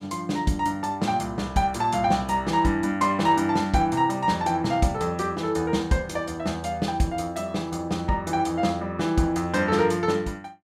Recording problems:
none

